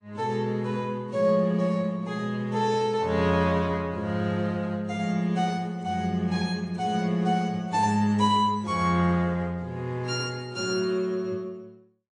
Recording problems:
codec artefacts; AAC, log-spectral distance 2 dB

